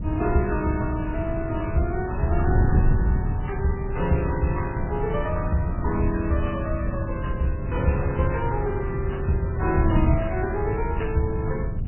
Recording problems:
lossy codec; MP3, log-spectral distance 4 dB, nothing above 2.7 kHz
wind noise; below 130 Hz, SNR 1 dB

